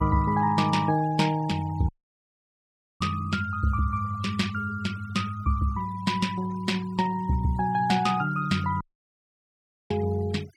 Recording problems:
noise reduction artefacts; signal-to-artefact ratio 21 dB
dropout; at 2 s for 1 s and at 9 s for 1 s

